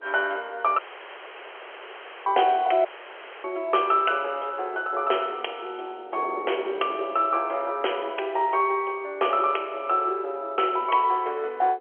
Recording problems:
telephone audio; 340 Hz to 3.3 kHz, G.711
wind on the microphone; below 570 Hz, SNR 19 dB
dropout; at 1 s for 1.5 s and at 3 s for 0.5 s

